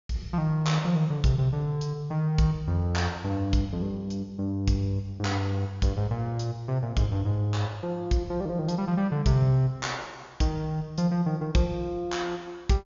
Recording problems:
treble missing; nothing above 7.1 kHz

